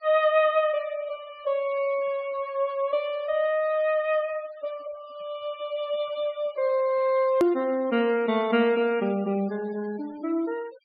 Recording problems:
low-pass filter; nothing above 4.9 kHz
noise reduction artefacts; signal-to-artefact ratio 25 dB
click at an edit; at 7.5 s

